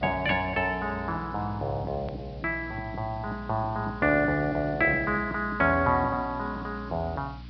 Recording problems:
low-pass filter; nothing above 5.5 kHz
lossy compression; G.722, log-spectral distance 5 dB
hum; 60 Hz, harmonics up to 300 Hz, SNR 15 dB
background hiss; SNR 27 dB
edit click; at 2 s

